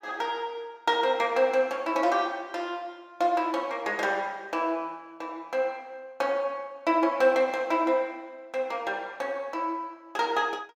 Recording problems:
none

